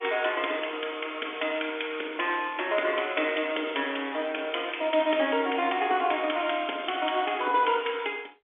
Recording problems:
phone line; 260 Hz to 3.6 kHz, G.711

